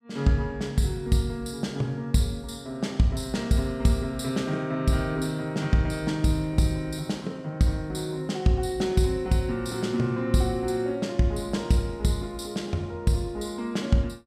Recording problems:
none

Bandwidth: 15.5 kHz